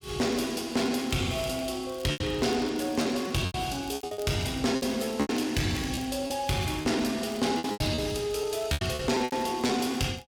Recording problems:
distorted audio; soft clipping, signal-to-distortion ratio 10 dB
crackling; vinyl, SNR 23 dB
lost packets; 10% of the sound replaced, filled with repeated pitch periods

